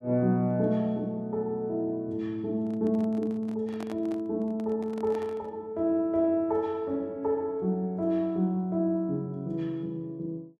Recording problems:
handling noise; from 2.5 to 5.5 s; peak -8 dB vs average level

